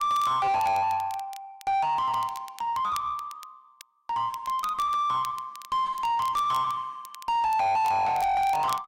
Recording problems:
distortion; soft clipping, signal-to-distortion ratio 6 dB
crackle; vinyl, SNR 21 dB

